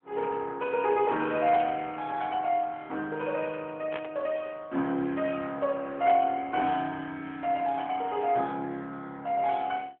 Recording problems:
phone line; 170 Hz to 3.3 kHz, AMR-NB
static burst; at 1.5 s, at 4 s and at 6 s; peak -4 dB vs average level

